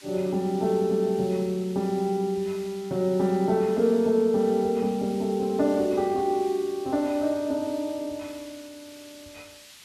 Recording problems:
hiss; slope +3 dB per octave, SNR 21 dB

